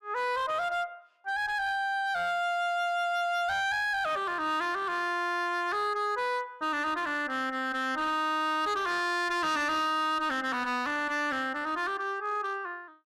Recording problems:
distortion; hard clipping, uneven, signal-to-distortion ratio 10 dB

